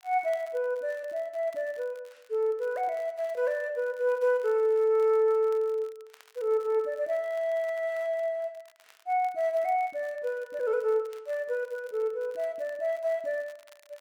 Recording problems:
crackling; vinyl, SNR 30 dB

